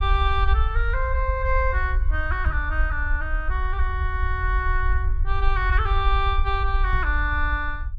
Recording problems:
low-frequency rumble; below 62 Hz, SNR -1 dB
knock on the microphone; at 2.5 s and at 7 s; peak -3 dB vs average level

